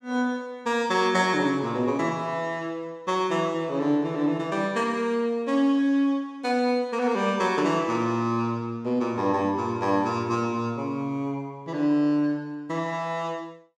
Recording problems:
none

